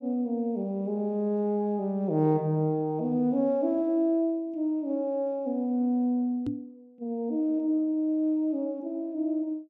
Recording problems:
knock on the microphone; at 6.5 s; peak 0 dB vs average level

